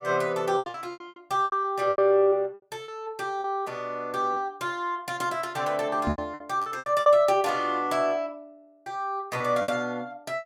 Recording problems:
packet loss; 11% of the sound replaced, filled with repeated pitch periods
microphone bump; at 6 s; peak +1 dB vs average level

